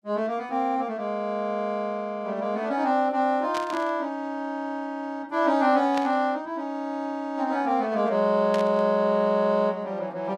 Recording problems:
static burst; at 3.5 s, at 6 s and at 8.5 s; peak -6 dB vs average level

